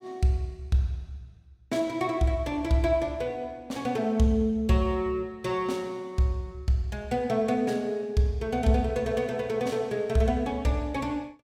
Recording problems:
none

